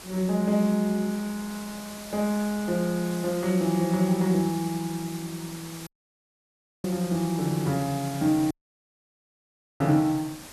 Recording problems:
background hiss; slope -1 dB per octave, SNR 14 dB
wind on the microphone; below 1.7 kHz, SNR 26 dB
audio cutting out; at 6 s for 1 s and at 8.5 s for 1.5 s

